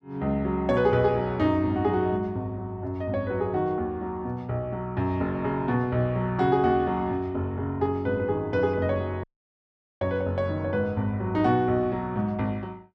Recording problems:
audio cutting out; at 9 s for 1 s

